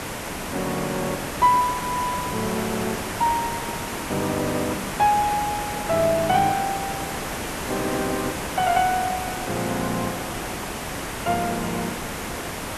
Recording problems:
background hiss; slope -4 dB per octave, SNR 4 dB

